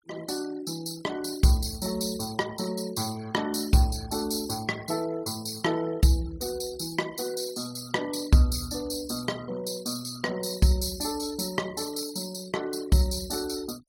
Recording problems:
noise reduction artefacts; signal-to-artefact ratio 18 dB

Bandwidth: 17 kHz